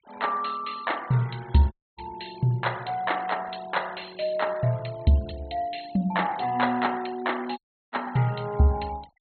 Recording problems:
treble missing; nothing above 4.3 kHz
noise reduction artefacts; signal-to-artefact ratio 22 dB
dropout; at 1.5 s and at 7.5 s

